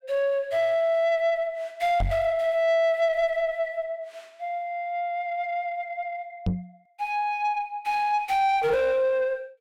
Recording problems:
distortion; soft clipping, signal-to-distortion ratio 11 dB
microphone thump; at 2 s and at 6.5 s; peak +3 dB vs average level

